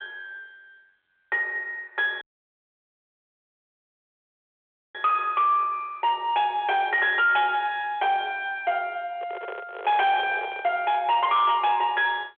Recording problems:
phone line; 320 Hz to 3.5 kHz, G.726
distorted audio; soft clipping, signal-to-distortion ratio 11 dB
dropout; at 2 s for 2.5 s
microphone handling noise; from 9 to 11 s; peak -9 dB vs average level

